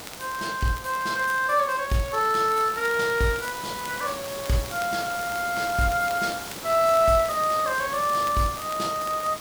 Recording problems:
background hiss; slope -3 dB per octave, SNR 12 dB
crackling; vinyl, SNR 19 dB

